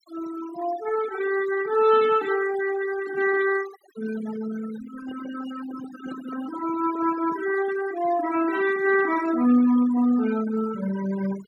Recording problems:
denoising artefacts; signal-to-artefact ratio 15 dB
handling noise; from 5 to 7.5 s; peak -13 dB vs average level

